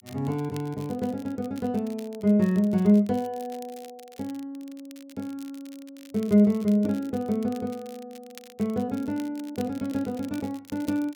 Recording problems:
crackle; vinyl, SNR 24 dB

